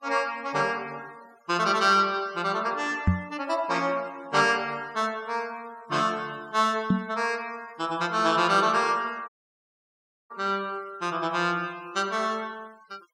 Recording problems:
noise reduction artefacts; signal-to-artefact ratio 25 dB
knock on the microphone; at 3 s and at 7 s; peak +8 dB vs average level
audio cutting out; at 9.5 s for 1 s

